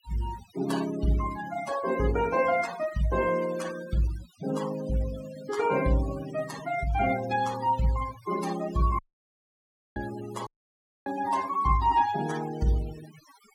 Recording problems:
denoising artefacts; signal-to-artefact ratio 14 dB
dropout; at 9 s for 1 s and at 10 s for 0.5 s

